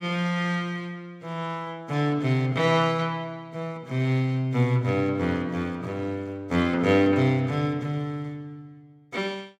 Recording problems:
none

